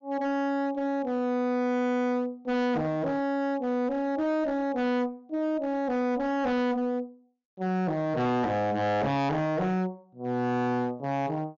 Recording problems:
low-pass filter; nothing above 7 kHz
distortion; hard clipping, signal-to-distortion ratio 7 dB

